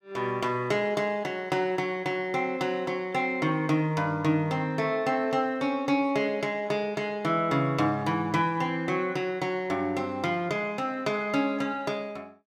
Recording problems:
none

